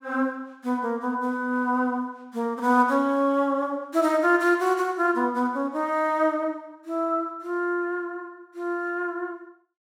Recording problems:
none

